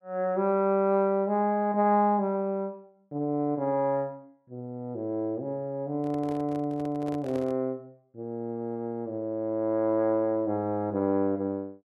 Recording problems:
handling noise; from 6 to 7.5 s; peak -10 dB vs average level

